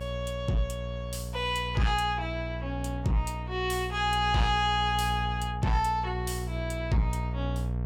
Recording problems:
distorted audio; soft clipping, signal-to-distortion ratio 10 dB
hum; 60 Hz, harmonics up to 720 Hz, SNR 5 dB

